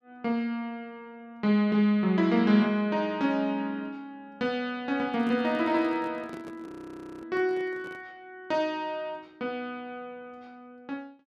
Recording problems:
microphone handling noise; from 5 to 8 s; peak -11 dB vs average level
frozen audio; at 6.5 s for 0.5 s

